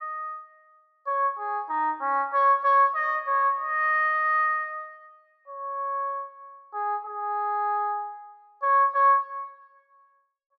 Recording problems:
none

